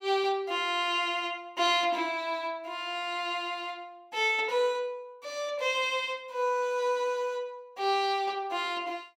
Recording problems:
none

